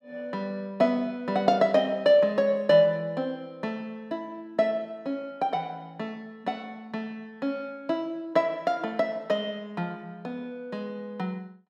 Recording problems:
none

